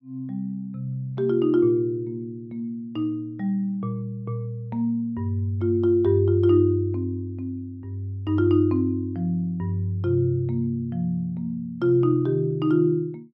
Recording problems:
none

